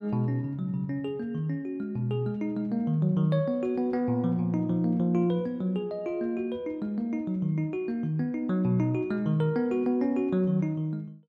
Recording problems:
none

